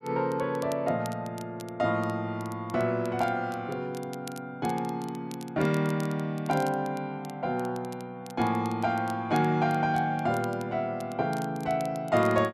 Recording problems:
crackling; vinyl, SNR 21 dB

